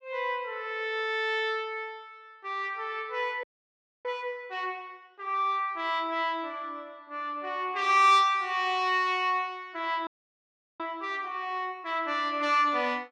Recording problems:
audio freezing; at 3.5 s for 0.5 s and at 10 s for 0.5 s

